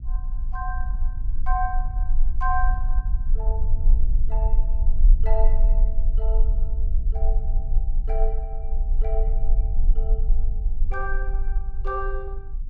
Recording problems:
low-frequency rumble; below 40 Hz, strongest tone 20 Hz, SNR -8 dB

